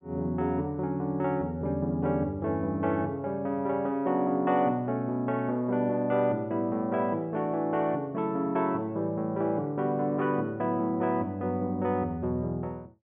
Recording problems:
low-pass filter; nothing above 3.5 kHz

